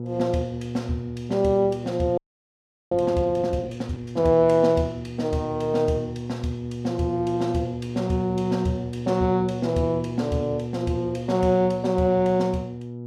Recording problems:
hum; 60 Hz, harmonics up to 840 Hz, SNR 9 dB
frozen audio; at 2 s for 0.5 s

